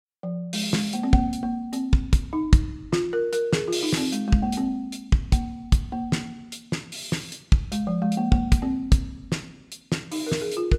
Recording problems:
none

